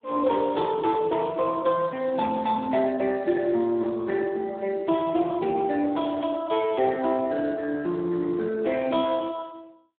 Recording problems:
phone line; 280 Hz to 3.6 kHz, Speex

